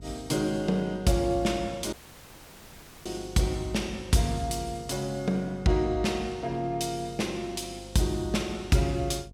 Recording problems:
electrical hum; 50 Hz, harmonics up to 500 Hz, SNR 19 dB
audio cutting out; at 2 s for 1 s

